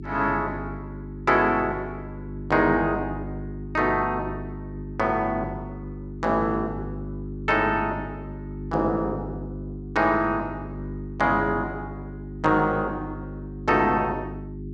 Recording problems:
electrical hum; 50 Hz, harmonics up to 400 Hz, SNR 11 dB

